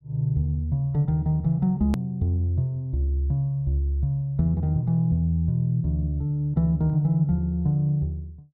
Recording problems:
click at an edit; at 2 s

